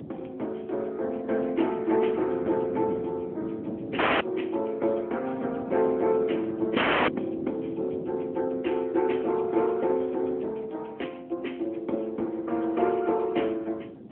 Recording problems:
phone line; 220 Hz to 3.2 kHz, AMR-NB
wind on the microphone; below 380 Hz, SNR 14 dB
audio cutting out; at 4 s and at 7 s

